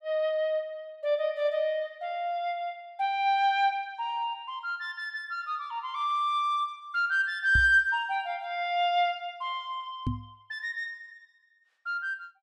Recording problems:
microphone thump; at 7.5 s and at 10 s; peak +2 dB vs average level

